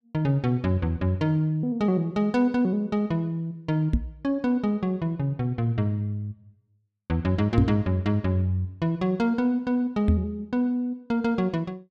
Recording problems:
knock on the microphone; at 4 s, at 7.5 s and at 10 s; peak +7 dB vs average level

